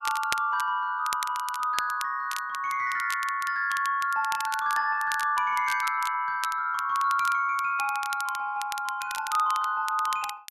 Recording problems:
crackle; vinyl, SNR 13 dB

